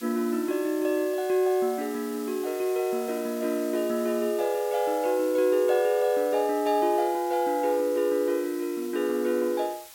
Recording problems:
hiss; slope +1 dB per octave, SNR 18 dB

